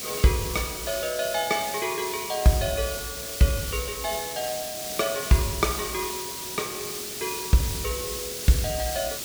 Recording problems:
hiss; SNR 4 dB

